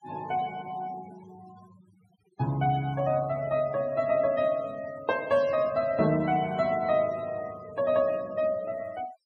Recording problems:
denoising artefacts; signal-to-artefact ratio 21 dB

